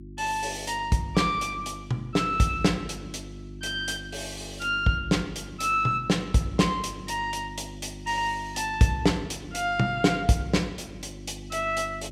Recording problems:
hum; 50 Hz, harmonics up to 350 Hz, SNR 15 dB

